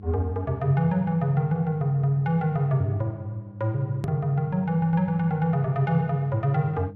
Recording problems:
mains hum; 50 Hz, harmonics up to 500 Hz, SNR 17 dB
edit click; at 4 s

